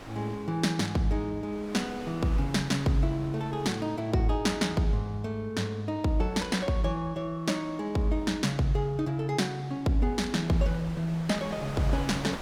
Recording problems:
wind on the microphone; below 1.8 kHz, SNR 16 dB

